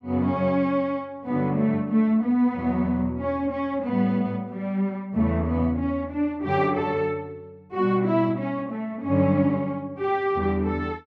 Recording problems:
none

